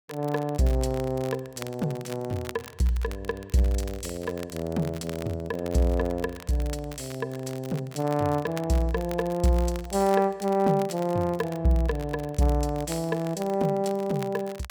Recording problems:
crackle; vinyl, SNR 18 dB

